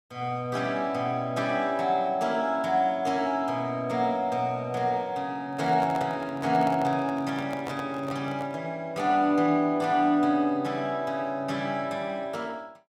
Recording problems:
microphone handling noise; from 5.5 to 8.5 s; peak -5 dB vs average level

